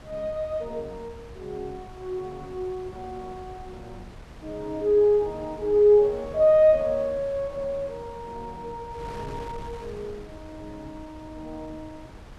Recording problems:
wind noise; below 580 Hz, SNR 20 dB

